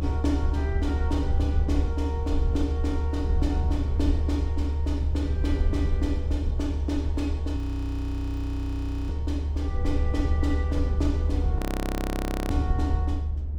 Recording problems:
low-frequency rumble; below 76 Hz, strongest tone 74 Hz, SNR -5 dB
frozen audio; at 7.5 s for 1.5 s and at 12 s for 1 s

